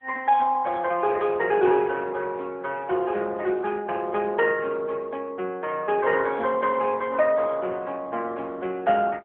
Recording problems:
telephone audio; 300 Hz to 3.3 kHz, AMR-NB

